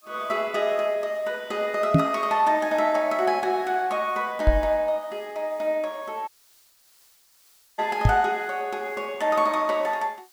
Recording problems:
hiss; slope +2 dB per octave, SNR 30 dB
knock on the microphone; at 2 s, at 4.5 s and at 8 s; peak +9 dB vs average level
dropout; at 6.5 s for 1.5 s

